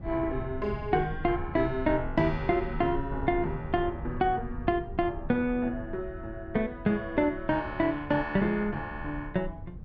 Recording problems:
rumble; below 100 Hz, SNR 12 dB

